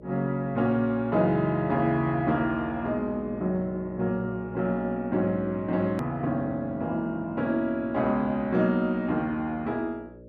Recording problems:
hum; 60 Hz, harmonics up to 600 Hz, SNR 18 dB
click at an edit; at 6 s

